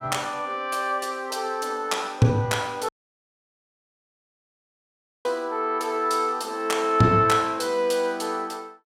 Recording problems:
audio cutting out; at 3 s for 2.5 s

